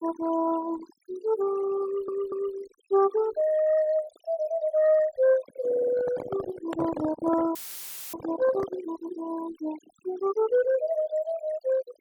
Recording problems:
denoising artefacts; signal-to-artefact ratio 15 dB
stutter; at 2 s and at 5.5 s
handling noise; from 5.5 to 9 s; peak -2 dB vs average level
dropout; at 7.5 s for 0.5 s; filled with static

